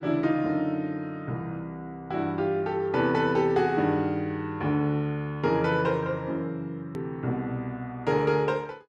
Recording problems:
hard cut with a click; at 7 s

